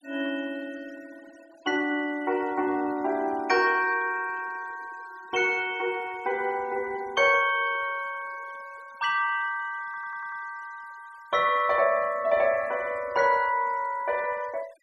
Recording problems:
noise reduction artefacts; signal-to-artefact ratio 24 dB
audio stuttering; at 10 s

